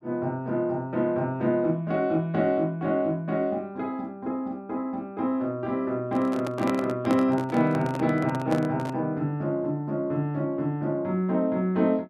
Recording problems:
microphone handling noise; from 6 to 9 s; peak -1 dB vs average level

